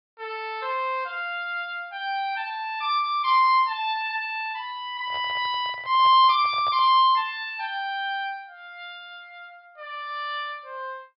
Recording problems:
low-pass filter; nothing above 5.5 kHz
handling noise; from 5 to 7 s; peak -11 dB vs average level

